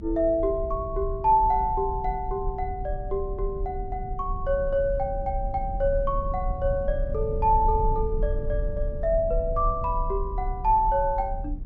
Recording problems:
treble missing; nothing above 8 kHz
rumble; below 64 Hz, strongest tone 30 Hz, SNR 7 dB

